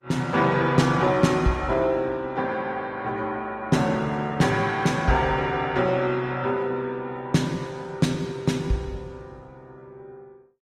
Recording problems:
codec artefacts; Opus, log-spectral distance 2 dB, nothing above 17.7 kHz

